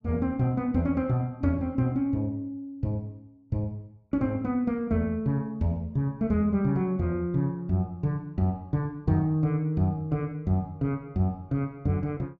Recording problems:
none

